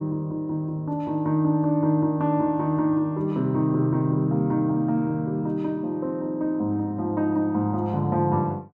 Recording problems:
none

